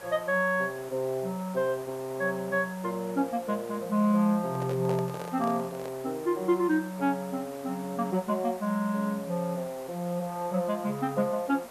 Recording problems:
hiss; SNR 18 dB
handling noise; from 4.5 to 6 s; peak -2 dB vs average level

